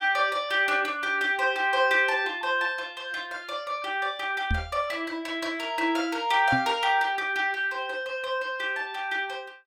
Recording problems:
microphone thump; at 4.5 s and at 6.5 s; peak +1 dB vs average level

